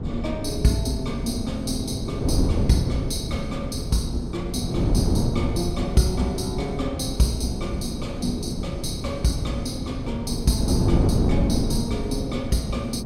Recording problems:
wind on the microphone; below 250 Hz, SNR 0 dB

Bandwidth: 16 kHz